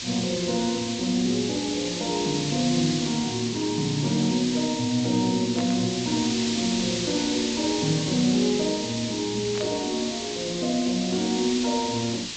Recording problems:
treble cut off; nothing above 8 kHz
hiss; SNR 5 dB
burst of static; at 5.5 s and at 9.5 s; peak -7 dB vs average level

